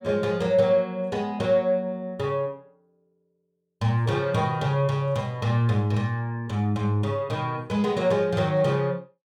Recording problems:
none

